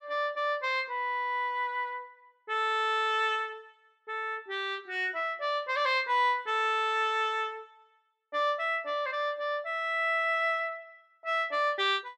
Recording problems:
none

